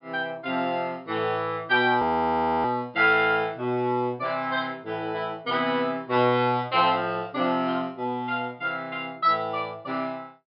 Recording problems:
low-pass filter; nothing above 5.2 kHz
audio freezing; at 2 s for 0.5 s

